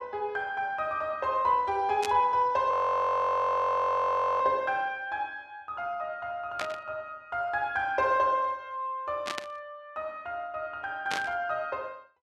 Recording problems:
static burst; 4 times, first at 2 s; peak 0 dB vs average level
frozen audio; at 2.5 s for 1.5 s

